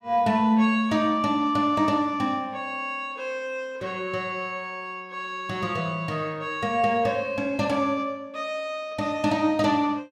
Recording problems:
none

